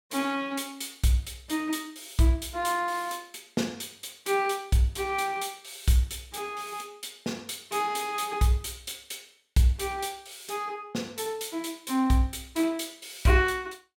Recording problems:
none

